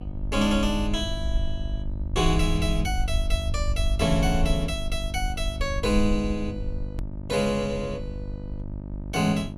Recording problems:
hum; 50 Hz, harmonics up to 950 Hz, SNR 10 dB
rumble; below 64 Hz, SNR 5 dB
click at an edit; at 7 s

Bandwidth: 14 kHz